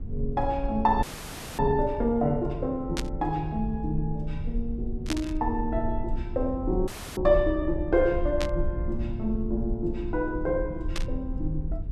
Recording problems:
rumble; below 66 Hz, SNR 7 dB
audio freezing; at 1 s for 0.5 s and at 7 s
static burst; 4 times, first at 3 s; peak 0 dB vs average level

